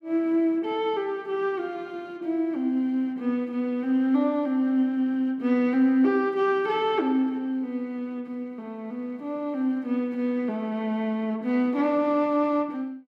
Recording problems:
none

